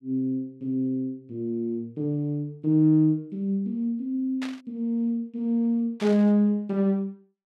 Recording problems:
burst of static; at 4.5 s and at 6 s; peak -8 dB vs average level

